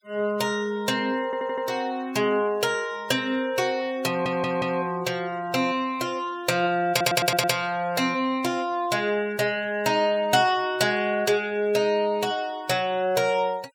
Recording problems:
noise reduction artefacts; signal-to-artefact ratio 23 dB
stutter; at 1.5 s, at 4 s and at 7 s

